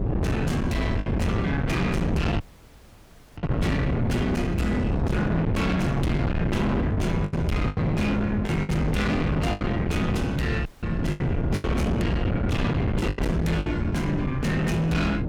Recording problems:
distorted audio; soft clipping, signal-to-distortion ratio 6 dB
electrical hum; 60 Hz, harmonics up to 300 Hz, SNR 20 dB
wind noise; below 300 Hz, SNR 1 dB
packet loss; 6% of the sound replaced, filled with the last packet
audio cutting out; at 2.5 s for 1 s and at 11 s

